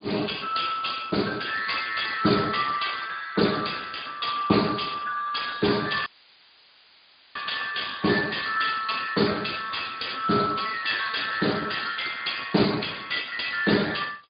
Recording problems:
treble missing; nothing above 4.9 kHz
lossy compression; Speex, log-spectral distance 9 dB
audio cutting out; at 6 s for 1.5 s; filled with static

